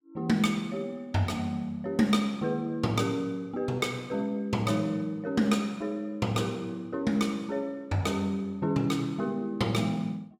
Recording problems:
none

